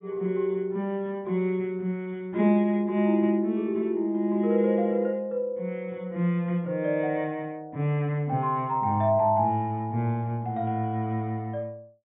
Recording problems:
treble missing; nothing above 4 kHz

